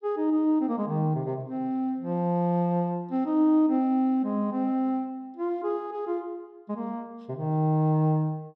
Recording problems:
none

